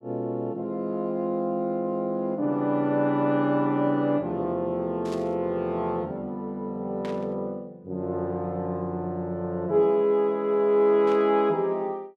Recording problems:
static burst; at 5 s, at 7 s and at 11 s; peak -12 dB vs average level

